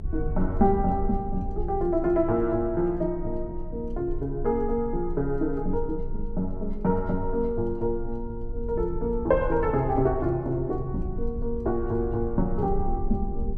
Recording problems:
rumble; below 54 Hz, strongest tone 20 Hz, SNR 9 dB

